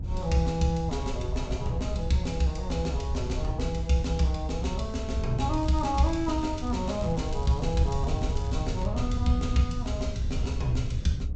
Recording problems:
treble cut off; nothing above 8 kHz
rumble; below 90 Hz, strongest tone 66 Hz, SNR 5 dB
wind on the microphone; below 100 Hz, SNR 7 dB
crackle; from 5.5 to 9 s; loose cable, SNR 22 dB

